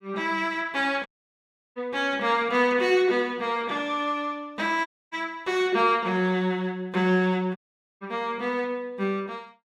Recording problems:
audio cutting out; at 1 s for 0.5 s, at 5 s and at 7.5 s

